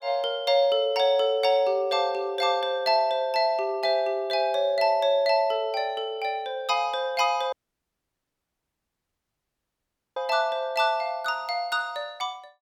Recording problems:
dropout; at 7.5 s for 2.5 s

